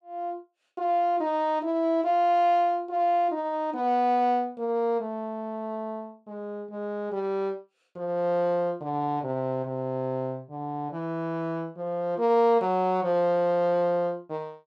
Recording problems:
none

